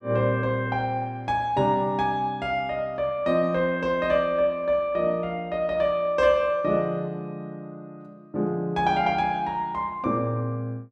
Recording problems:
none

